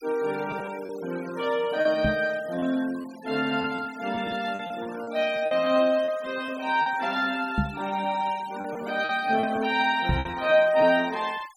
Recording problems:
noise reduction artefacts; signal-to-artefact ratio 20 dB
lost packets; 7% of the sound replaced, filled with repeated pitch periods
microphone thump; at 2 s, at 7.5 s and at 10 s; peak +4 dB vs average level

